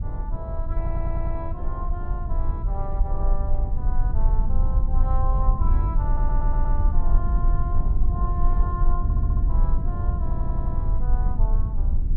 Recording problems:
low-frequency rumble; below 52 Hz, strongest tone 20 Hz, SNR -11 dB
audio stuttering; 4 times, first at 1 s

